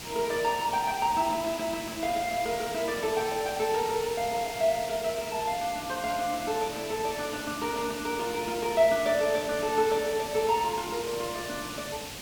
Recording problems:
hiss; SNR 9 dB

